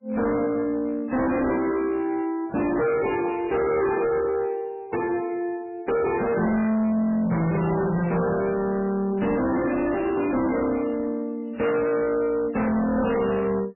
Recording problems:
lossy codec; MP3, log-spectral distance 3 dB, nothing above 2.4 kHz
distortion; hard clipping, uneven, signal-to-distortion ratio 8 dB

